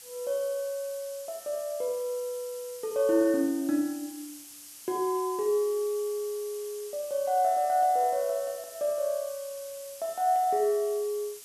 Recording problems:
background hiss; SNR 15 dB

